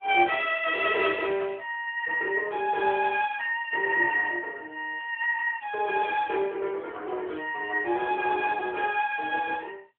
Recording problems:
telephone audio; 320 Hz to 3.6 kHz, AMR-NB

